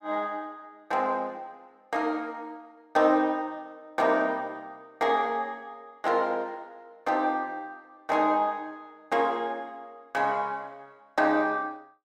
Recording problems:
none

